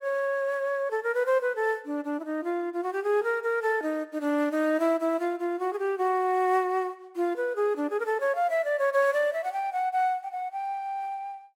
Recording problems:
none

